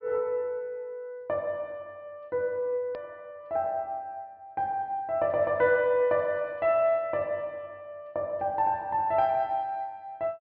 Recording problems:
low-pass filter; nothing above 5.1 kHz
hard cut with a click; at 3 s

